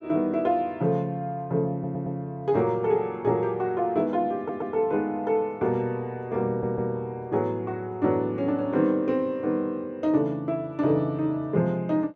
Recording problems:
stutter; at 1.5 s, at 4.5 s and at 6.5 s

